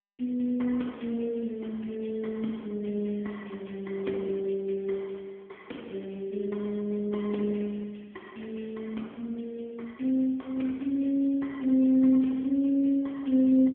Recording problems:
telephone audio; 170 Hz to 3.4 kHz, AMR-NB

